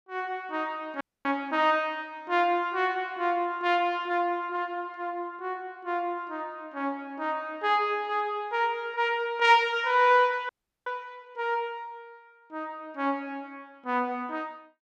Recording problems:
audio freezing; at 1 s and at 10 s

